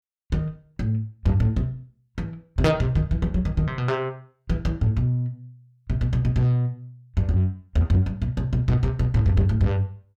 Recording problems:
distortion; soft clipping, signal-to-distortion ratio 12 dB

